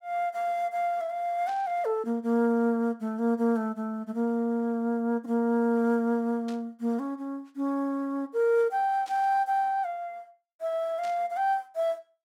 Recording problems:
burst of static; 4 times, first at 1.5 s; peak -14 dB vs average level

